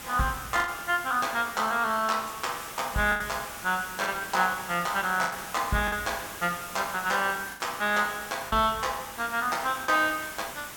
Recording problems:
background hiss; SNR 12 dB
lost packets; 5% of the sound replaced, filled with the last packet

